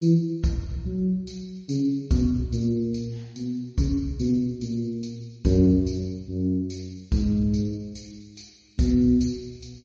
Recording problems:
lossy compression; MP3, then MP3, log-spectral distance 2 dB, nothing above 6.7 kHz

